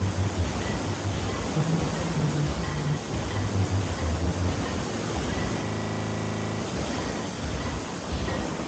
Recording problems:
lossy compression; MP3, then Speex, log-spectral distance 9 dB, nothing above 7.6 kHz
distortion; soft clipping, signal-to-distortion ratio 3 dB
background hiss; slope -6 dB per octave, SNR 1 dB
wind on the microphone; below 300 Hz, SNR 13 dB
frozen audio; at 5.5 s for 1 s

